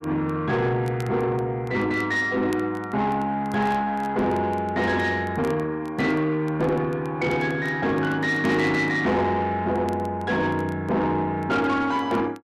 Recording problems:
distorted audio; soft clipping, signal-to-distortion ratio 11 dB
crackling; vinyl, SNR 27 dB

